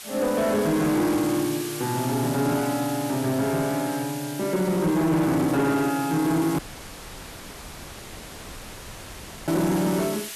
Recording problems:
distortion; soft clipping, signal-to-distortion ratio 12 dB
background hiss; slope +2 dB per octave, SNR 11 dB
dropout; at 6.5 s for 3 s

